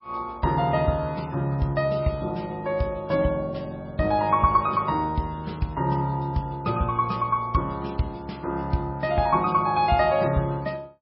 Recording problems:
lossy compression; MP3, log-spectral distance 2 dB, nothing above 4.8 kHz

